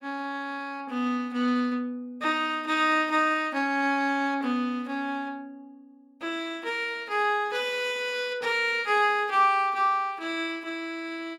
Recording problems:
none

